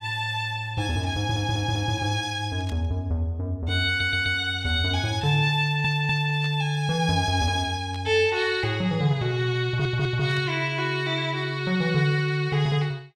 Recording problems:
stutter; 4 times, first at 1 s
burst of static; 4 times, first at 2.5 s; peak -13 dB vs average level

